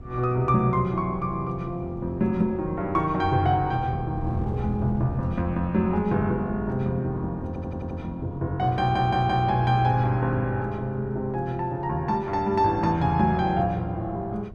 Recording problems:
wind on the microphone; below 210 Hz, SNR 16 dB
audio stuttering; at 7.5 s and at 9 s

